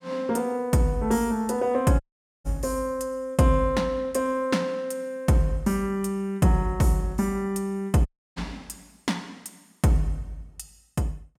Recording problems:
audio cutting out; at 2 s and at 8 s

